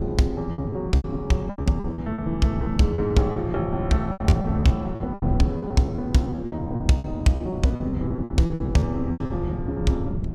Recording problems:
wind on the microphone; below 190 Hz, SNR 6 dB
packet loss; 17% of the sound replaced, filled with repeated pitch periods

